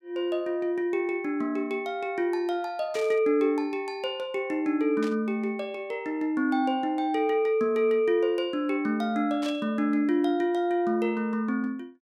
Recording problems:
burst of static; at 3 s, at 5 s and at 9.5 s; peak -9 dB vs average level

